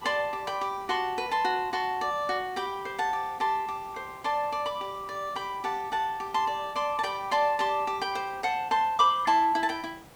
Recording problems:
background hiss; SNR 22 dB

